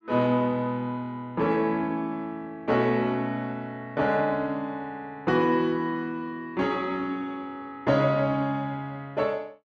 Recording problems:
none

